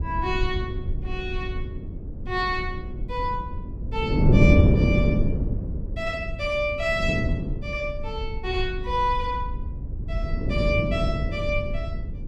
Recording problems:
low-frequency rumble; below 72 Hz, SNR 6 dB
wind on the microphone; below 220 Hz, SNR -4 dB

